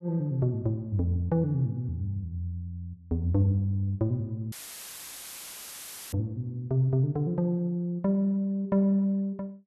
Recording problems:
dropout; at 4.5 s for 1.5 s; filled with static

